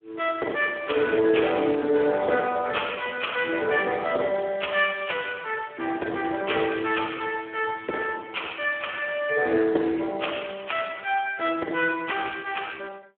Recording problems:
phone line; 260 Hz to 3.4 kHz, Speex

